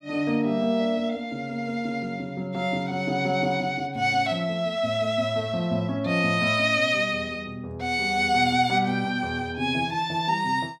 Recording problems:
none

